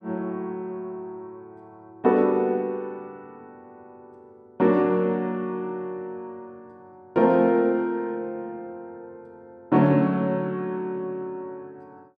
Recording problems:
none

